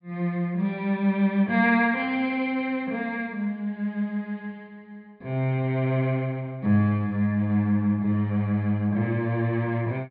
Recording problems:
treble cut off; nothing above 4.7 kHz

